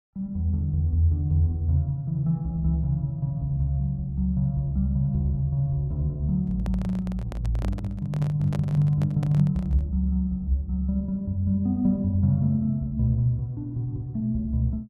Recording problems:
handling noise; from 6.5 to 10 s; peak -7 dB vs average level

